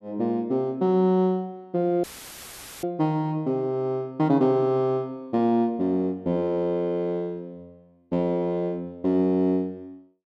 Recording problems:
dropout; at 2 s for 1 s; filled with static

